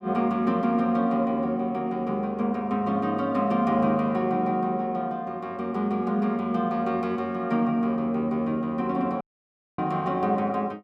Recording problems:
dropout; at 9 s for 0.5 s

